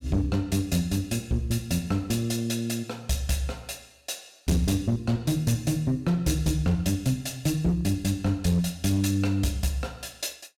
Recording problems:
distorted audio; hard clipping, uneven, signal-to-distortion ratio 12 dB

